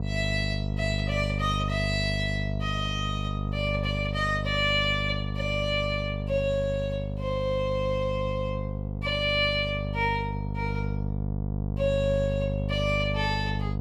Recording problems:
mains hum; 50 Hz, harmonics up to 750 Hz, SNR 2 dB

